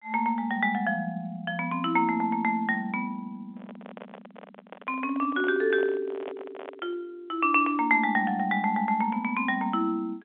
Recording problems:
telephone audio; 300 Hz to 3.5 kHz, G.711
handling noise; from 3.5 to 7 s; peak -8 dB vs average level

